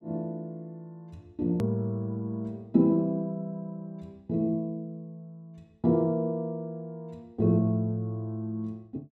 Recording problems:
edit click; at 1.5 s

